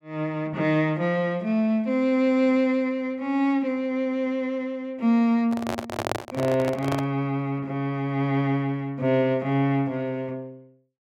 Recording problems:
handling noise; from 5.5 to 7 s; peak +1 dB vs average level

